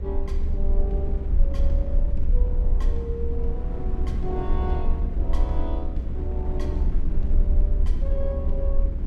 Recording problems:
rumble; below 64 Hz, strongest tone 24 Hz, SNR -8 dB
wind on the microphone; below 280 Hz, SNR 1 dB

